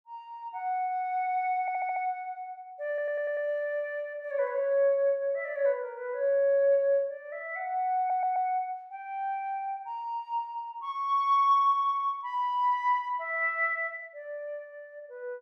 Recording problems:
audio stuttering; at 1.5 s, at 3 s and at 8 s

